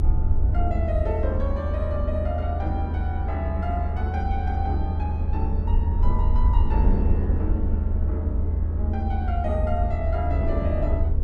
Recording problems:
rumble; below 80 Hz, SNR -6 dB
wind noise; below 360 Hz, SNR 4 dB

